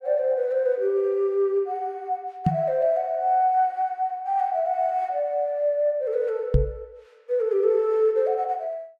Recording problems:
microphone thump; at 2.5 s and at 6.5 s; peak +7 dB vs average level

